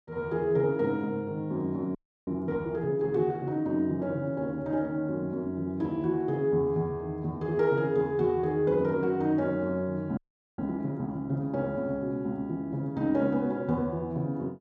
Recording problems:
frozen audio; at 2 s and at 10 s

